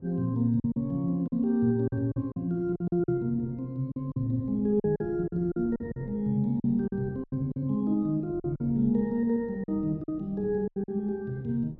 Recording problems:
wind on the microphone; below 250 Hz, SNR 20 dB
packet loss; 10% of the sound replaced, filled with silence

